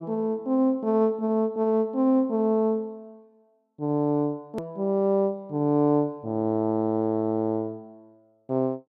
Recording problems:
click at an edit; at 4.5 s

